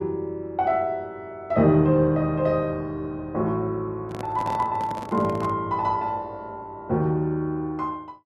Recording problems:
microphone handling noise; from 4 to 5.5 s; peak -6 dB vs average level

